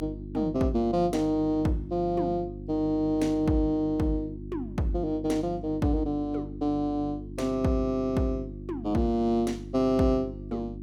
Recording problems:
hum; 50 Hz, harmonics up to 350 Hz, SNR 12 dB

